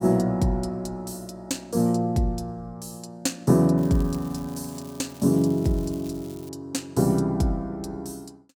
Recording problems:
crackling; from 4 to 6.5 s; loose cable, SNR 23 dB

